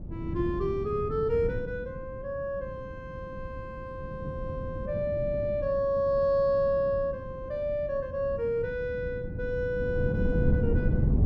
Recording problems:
wind on the microphone; below 190 Hz, SNR 5 dB

